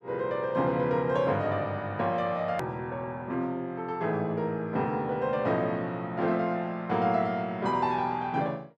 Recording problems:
hard cut with a click; at 2.5 s

